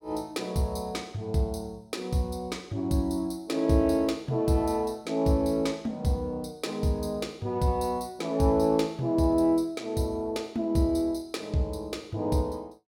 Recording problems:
none

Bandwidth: 17 kHz